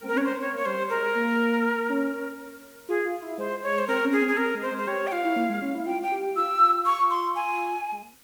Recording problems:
background hiss; slope -1 dB per octave, SNR 26 dB

